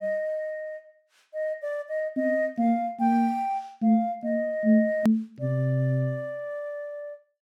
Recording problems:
edit click; at 5 s

